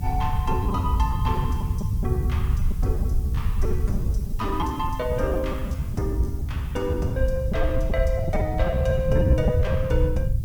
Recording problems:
hiss; slope +2 dB per octave, SNR 21 dB
low-frequency rumble; below 120 Hz, SNR -1 dB
wind noise; below 72 Hz, SNR 4 dB
lost packets; 12% of the sound replaced, filled with repeated pitch periods

